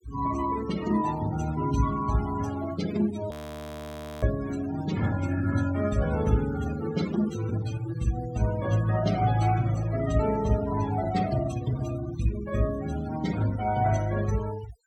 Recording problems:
noise reduction artefacts; signal-to-artefact ratio 14 dB
audio freezing; at 3.5 s for 1 s

